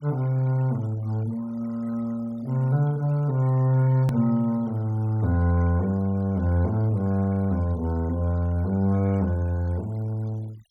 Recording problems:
denoising artefacts; signal-to-artefact ratio 26 dB
click at an edit; at 4 s

